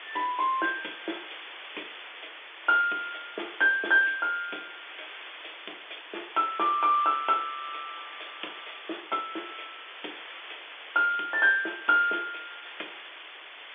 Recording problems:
phone line; 260 Hz to 3.6 kHz, G.711
hiss; SNR 15 dB

